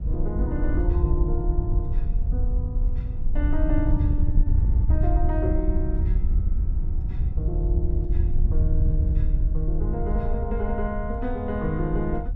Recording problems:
wind noise; below 74 Hz, SNR -6 dB

